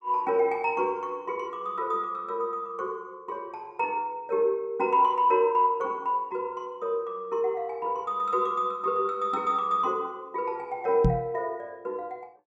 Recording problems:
knock on the microphone; at 11 s; peak +7 dB vs average level

